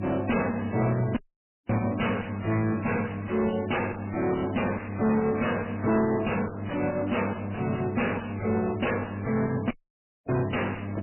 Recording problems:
lossy codec; MP3, log-spectral distance 10 dB, nothing above 2.9 kHz
distortion; soft clipping, signal-to-distortion ratio 6 dB
mains hum; 50 Hz, harmonics up to 700 Hz, SNR 8 dB
audio cutting out; at 1 s for 0.5 s and at 9.5 s for 0.5 s

